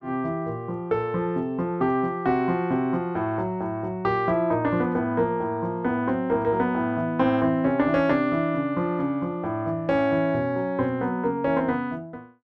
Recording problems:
none

